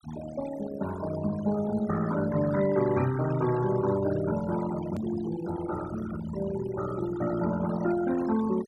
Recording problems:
noise reduction artefacts; signal-to-artefact ratio 12 dB
edit click; at 5 s

